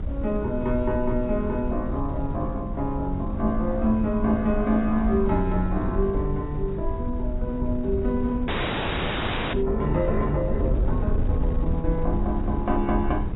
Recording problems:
lossy compression; AAC, log-spectral distance 2 dB, nothing above 3.5 kHz
electrical hum; 50 Hz, harmonics up to 350 Hz, SNR 18 dB
wind noise; below 86 Hz, SNR 4 dB
frozen audio; at 8.5 s for 1 s

